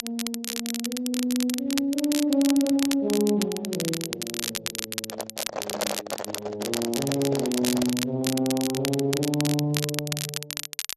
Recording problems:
lossy codec; Speex, log-spectral distance 2 dB
crackling; vinyl, SNR 5 dB
handling noise; from 5 to 8 s; peak +2 dB vs average level

